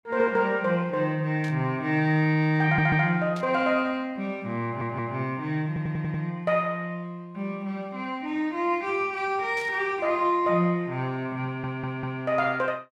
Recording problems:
burst of static; at 1.5 s, at 3.5 s and at 9.5 s; peak -12 dB vs average level
audio stuttering; 4 times, first at 2.5 s

